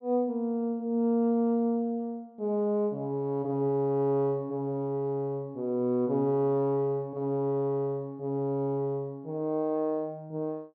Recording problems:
none

